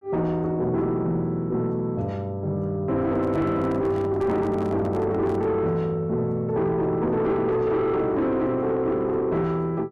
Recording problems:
distortion; soft clipping, signal-to-distortion ratio 10 dB
microphone handling noise; from 3 to 5.5 s; peak -6 dB vs average level

